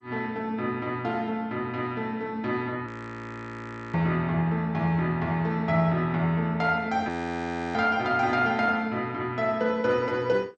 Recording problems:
codec artefacts; MP2, log-spectral distance 2 dB
audio freezing; at 3 s for 1 s and at 7 s for 0.5 s

